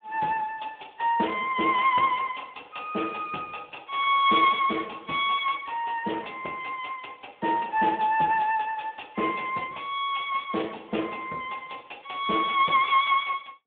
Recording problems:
phone line; 190 Hz to 3.4 kHz, Speex

